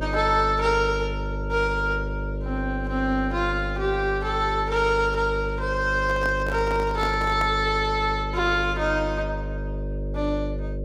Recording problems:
hum; 50 Hz, harmonics up to 600 Hz, SNR 6 dB
handling noise; from 6 to 7.5 s; peak -5 dB vs average level

